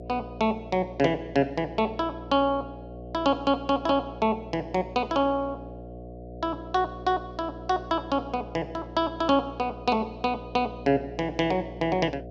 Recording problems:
hum; 60 Hz, harmonics up to 720 Hz, SNR 14 dB

